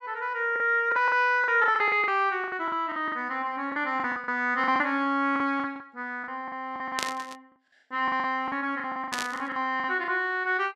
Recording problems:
packet loss; 15% of the sound replaced, filled with the last packet
static burst; at 7 s and at 9 s; peak +1 dB vs average level

